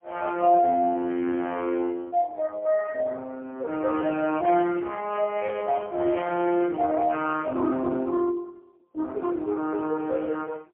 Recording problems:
phone line; 190 Hz to 2.9 kHz, AMR-NB, then MP3

